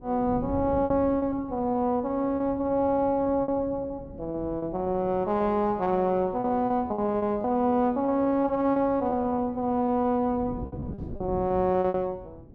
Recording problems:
wind on the microphone; below 290 Hz, SNR 16 dB
lost packets; 12% of the sound replaced, filled with repeated pitch periods

